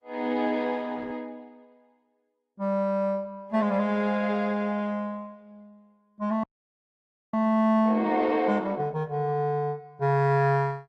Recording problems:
lossy codec; Opus, log-spectral distance 2 dB
frozen audio; at 6.5 s for 1 s

